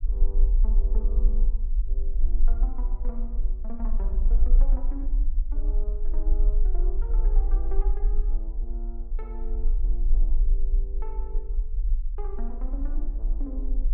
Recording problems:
rumble; below 38 Hz, strongest tone 26 Hz, SNR -15 dB

